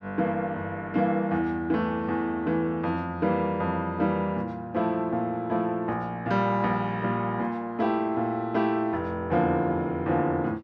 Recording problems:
none

